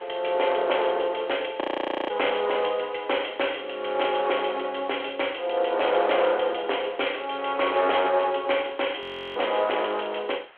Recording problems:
telephone audio; 320 Hz to 3.3 kHz, G.726
distortion; hard clipping, uneven, signal-to-distortion ratio 11 dB
hiss; SNR 24 dB
audio freezing; at 1.5 s and at 9 s

